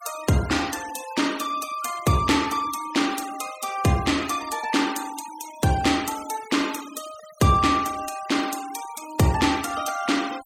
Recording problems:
denoising artefacts; signal-to-artefact ratio 15 dB

